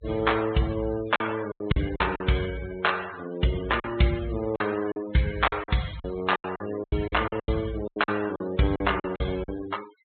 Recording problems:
treble missing; nothing above 4 kHz
noise reduction artefacts; signal-to-artefact ratio 15 dB
packet loss; 12% of the sound replaced, filled with silence

